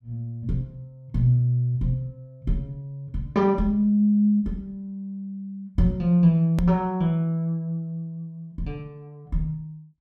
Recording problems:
click at an edit; at 6.5 s

